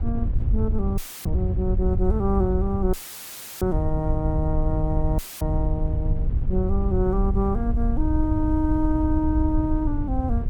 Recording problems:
wind on the microphone; below 84 Hz, SNR 0 dB
dropout; at 1 s, at 3 s for 0.5 s and at 5 s; filled with static

